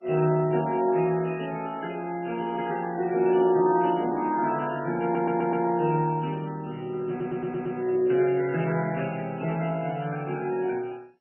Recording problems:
codec artefacts; MP3, then MP2, log-spectral distance 3 dB, nothing above 2.9 kHz
stutter; at 5 s and at 7 s

